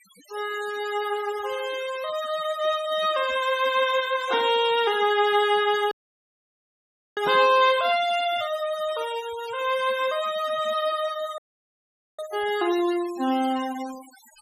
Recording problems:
noise reduction artefacts; signal-to-artefact ratio 17 dB
dropout; at 6 s for 1.5 s and at 11 s for 1 s

